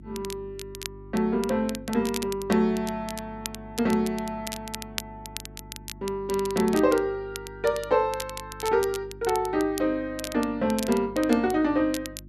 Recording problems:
hum; 50 Hz, harmonics up to 350 Hz, SNR 20 dB
crackling; vinyl, SNR 13 dB

